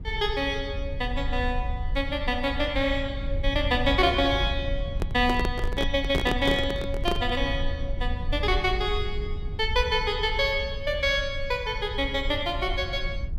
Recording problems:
rumble; below 72 Hz, SNR 7 dB
microphone handling noise; from 5 to 7.5 s; peak +2 dB vs average level

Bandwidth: 16 kHz